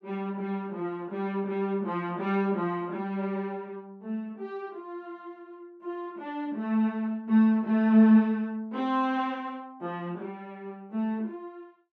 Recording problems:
none

